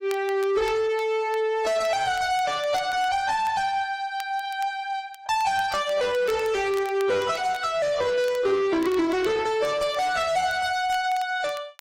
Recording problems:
codec artefacts; AAC, then AAC, log-spectral distance 2 dB, nothing above 14.3 kHz
distorted audio; soft clipping, signal-to-distortion ratio 10 dB
crackling; vinyl, SNR 23 dB

